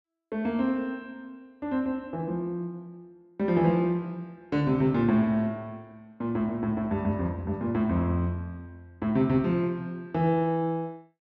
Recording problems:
none

